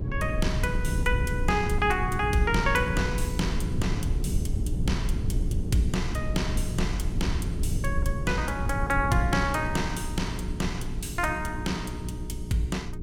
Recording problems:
electrical hum; 60 Hz, harmonics up to 420 Hz, SNR 9 dB
rumble; below 110 Hz, SNR 2 dB

